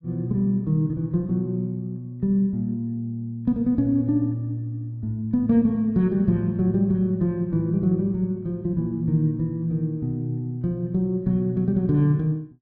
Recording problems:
none

